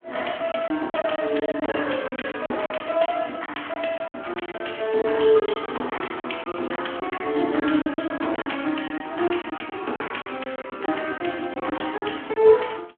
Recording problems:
telephone audio; 220 Hz to 3.3 kHz, Speex
packet loss; 14% of the sound replaced, filled with silence

